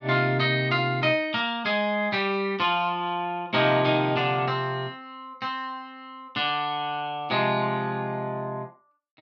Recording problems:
none

